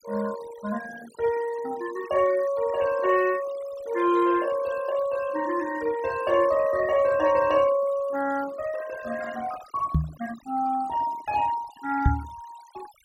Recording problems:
noise reduction artefacts; signal-to-artefact ratio 18 dB
knock on the microphone; at 10 s and at 12 s; peak +7 dB vs average level

